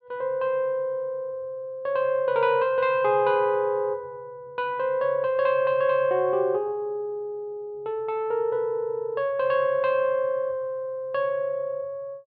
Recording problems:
treble cut off; nothing above 5.5 kHz

